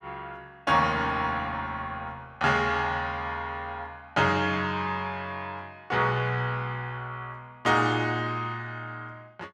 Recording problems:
none

